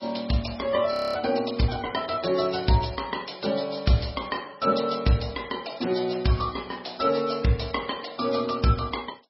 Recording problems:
lossy compression; MP3, log-spectral distance 7 dB, nothing above 5.5 kHz
audio freezing; at 1 s

